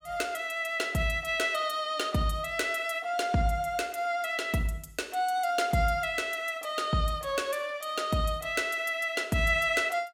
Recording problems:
none

